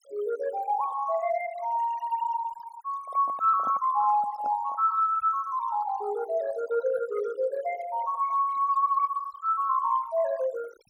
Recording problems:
denoising artefacts; signal-to-artefact ratio 18 dB
microphone handling noise; from 3 to 5 s; peak -10 dB vs average level

